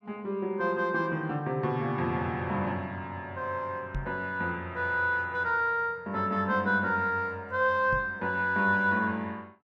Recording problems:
microphone bump; at 4 s and at 8 s; peak -2 dB vs average level

